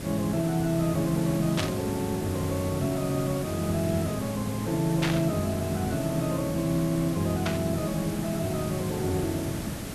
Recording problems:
background hiss; SNR 6 dB
static burst; at 1.5 s, at 5 s and at 7.5 s; peak +3 dB vs average level

